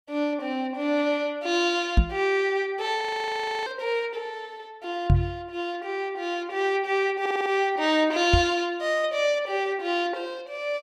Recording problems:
microphone bump; at 2 s, at 5 s and at 8.5 s; peak +10 dB vs average level
frozen audio; at 3 s for 0.5 s
audio stuttering; at 7 s

